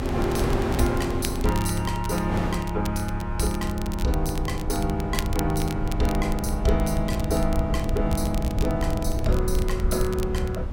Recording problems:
rumble; below 86 Hz, SNR 3 dB
wind on the microphone; below 750 Hz, SNR 9 dB
crackle; vinyl, SNR 14 dB

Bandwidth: 16.5 kHz